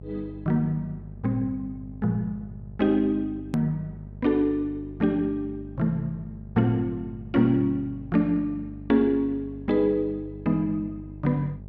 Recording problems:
hum; 50 Hz, harmonics up to 650 Hz, SNR 15 dB
edit click; at 3.5 s

